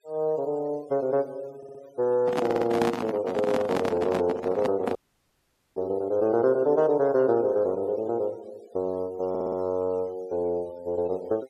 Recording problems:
denoising artefacts; signal-to-artefact ratio 25 dB
stutter; at 1.5 s, at 2.5 s and at 9.5 s
microphone handling noise; from 2 to 5 s; peak +3 dB vs average level
audio cutting out; at 5 s for 1 s

